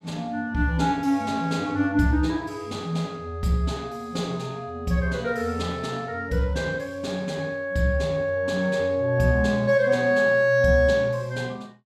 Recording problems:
none

